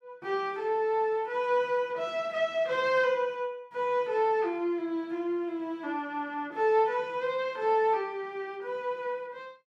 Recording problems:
none

